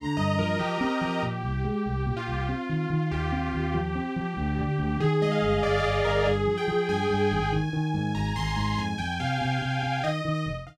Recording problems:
none

